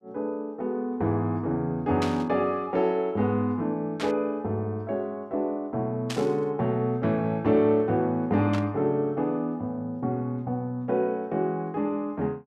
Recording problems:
static burst; 4 times, first at 2 s; peak -3 dB vs average level

